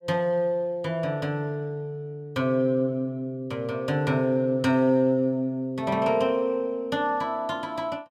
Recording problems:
none

